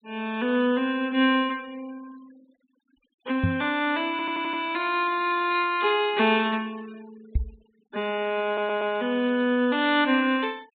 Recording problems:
treble cut off; nothing above 4 kHz
noise reduction artefacts; signal-to-artefact ratio 26 dB
knock on the microphone; at 3.5 s and at 7.5 s; peak +3 dB vs average level
audio stuttering; at 4 s and at 8.5 s

